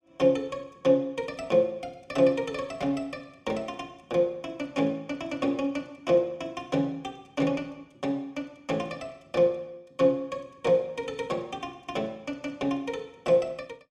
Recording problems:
none

